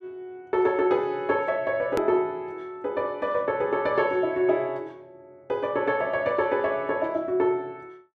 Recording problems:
hard cut with a click; at 2 s

